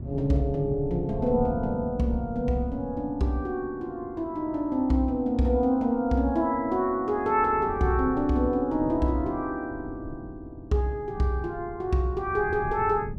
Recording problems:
wind on the microphone; below 170 Hz, SNR 14 dB

